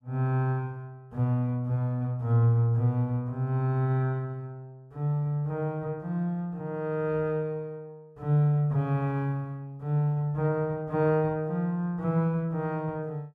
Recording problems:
none

